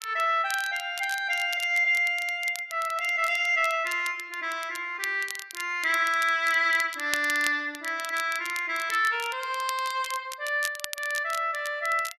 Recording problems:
crackle; vinyl, SNR 14 dB

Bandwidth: 13 kHz